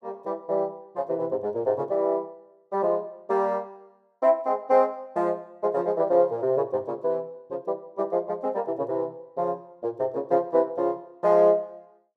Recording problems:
none

